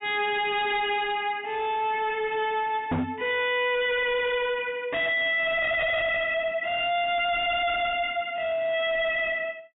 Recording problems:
treble missing; nothing above 4 kHz
distortion; hard clipping, signal-to-distortion ratio 5 dB
microphone bump; at 3 s; peak +1 dB vs average level

